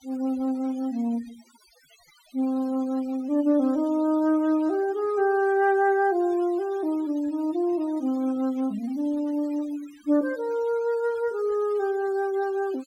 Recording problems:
noise reduction artefacts; signal-to-artefact ratio 24 dB

